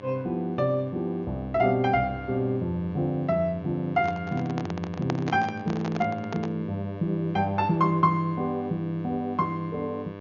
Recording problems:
treble cut off; nothing above 6.9 kHz
hum; 50 Hz, harmonics up to 3.3 kHz, SNR 13 dB
handling noise; from 4 to 6.5 s; peak +1 dB vs average level

